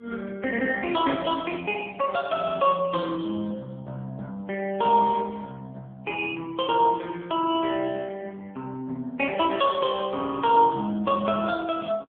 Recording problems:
phone line; 280 Hz to 3.3 kHz, AMR-NB

